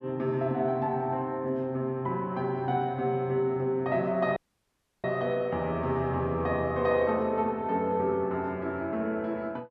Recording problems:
dropout; at 4.5 s for 0.5 s

